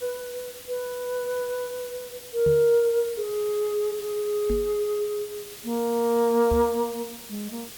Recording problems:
hiss; slope 0 dB per octave, SNR 14 dB
microphone bump; at 2.5 s, at 4.5 s and at 6.5 s; peak -1 dB vs average level

